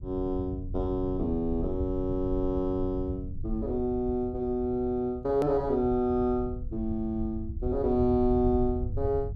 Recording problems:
low-frequency rumble; below 92 Hz, SNR 8 dB
edit click; at 5.5 s

